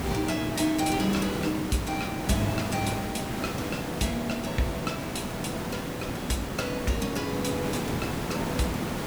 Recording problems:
electrical hum; 50 Hz, harmonics up to 1.4 kHz, SNR 26 dB
hiss; slope -6 dB per octave, SNR 1 dB

